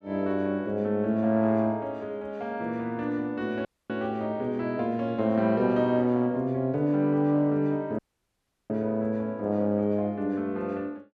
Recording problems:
dropout; at 3.5 s and at 8 s for 0.5 s

